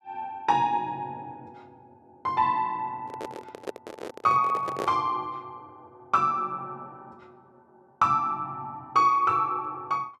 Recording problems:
handling noise; from 3 to 5 s; peak -2 dB vs average level

